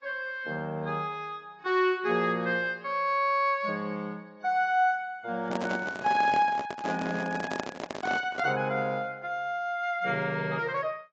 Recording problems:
lossy compression; AAC, log-spectral distance 2 dB
microphone handling noise; from 5.5 to 8.5 s; peak +1 dB vs average level

